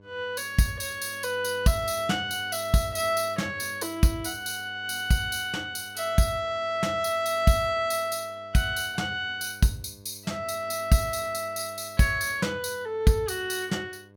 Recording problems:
mains hum; 50 Hz, harmonics up to 1.1 kHz, SNR 24 dB

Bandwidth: 17.5 kHz